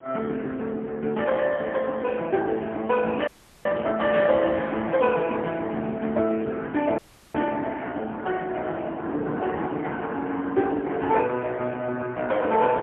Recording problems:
phone line; 170 Hz to 3.5 kHz, AMR-NB, then MP3
wind noise; below 620 Hz, SNR 18 dB
dropout; at 3.5 s and at 7 s

